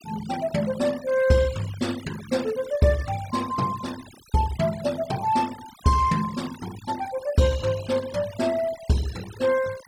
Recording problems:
denoising artefacts; signal-to-artefact ratio 17 dB

